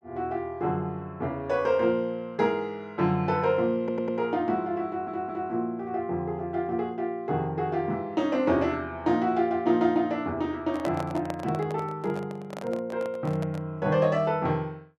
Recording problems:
audio stuttering; at 4 s and at 5 s
microphone handling noise; from 11 to 14 s; peak -1 dB vs average level

